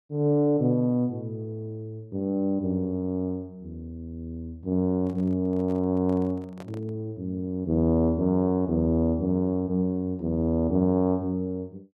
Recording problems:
microphone handling noise; from 5 to 7 s; peak -12 dB vs average level

